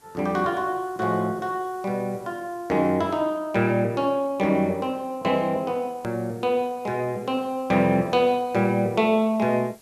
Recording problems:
background hiss; slope -3 dB per octave, SNR 29 dB
hard cut with a click; at 6 s

